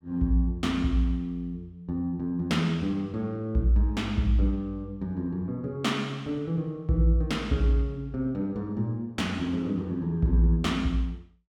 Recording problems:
none

